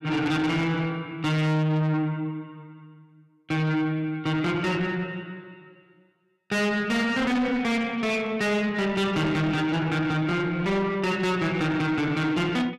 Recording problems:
distorted audio; soft clipping, signal-to-distortion ratio 8 dB

